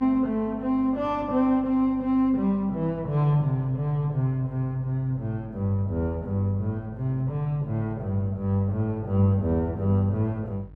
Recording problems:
electrical hum; 50 Hz, harmonics up to 600 Hz, SNR 20 dB

